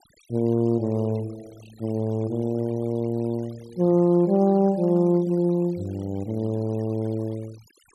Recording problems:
noise reduction artefacts; signal-to-artefact ratio 27 dB

